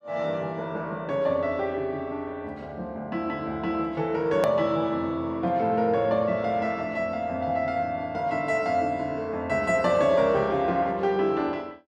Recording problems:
click at an edit; at 4.5 s

